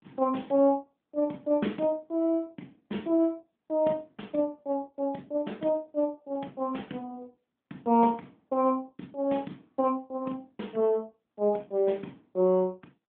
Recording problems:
phone line; 150 Hz to 3.7 kHz, AMR-NB

